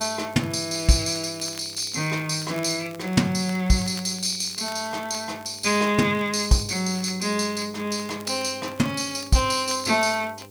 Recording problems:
hum; 50 Hz, harmonics up to 1.3 kHz, SNR 25 dB
hiss; SNR 28 dB
crackling; vinyl, SNR 22 dB

